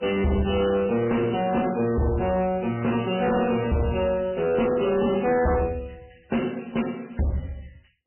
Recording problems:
codec artefacts; MP3, log-spectral distance 8 dB, nothing above 3 kHz
distorted audio; hard clipping, signal-to-distortion ratio 7 dB

